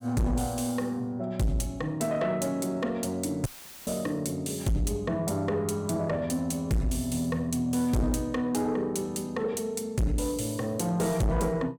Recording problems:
distortion; soft clipping, signal-to-distortion ratio 7 dB
audio cutting out; at 3.5 s; filled with static

